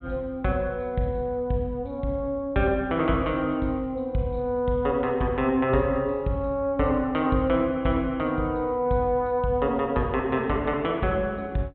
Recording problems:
low-pass filter; nothing above 4 kHz

